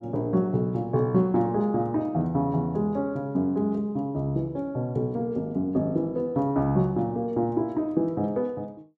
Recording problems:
none

